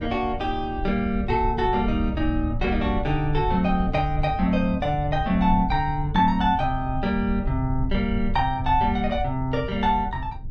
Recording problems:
low-frequency rumble; below 82 Hz, SNR 8 dB

